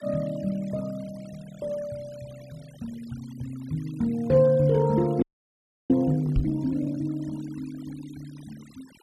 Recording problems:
noise reduction artefacts; signal-to-artefact ratio 25 dB
audio freezing; at 5 s for 0.5 s
microphone thump; at 6.5 s; peak +3 dB vs average level

